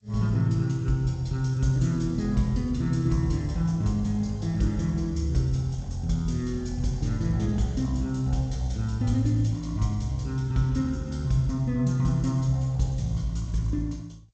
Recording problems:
lossy codec; G.722, log-spectral distance 2 dB, nothing above 7.3 kHz

